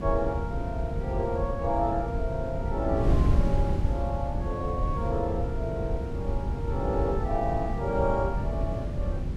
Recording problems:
electrical hum; 50 Hz, harmonics up to 350 Hz, SNR 12 dB
wind noise; below 120 Hz, SNR -1 dB

